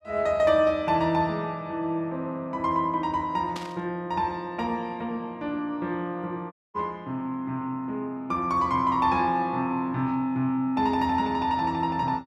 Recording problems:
burst of static; at 3.5 s; peak -6 dB vs average level
audio cutting out; at 6.5 s

